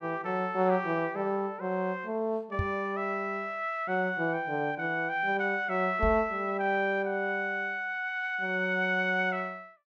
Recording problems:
microphone thump; at 2.5 s and at 6 s; peak +2 dB vs average level

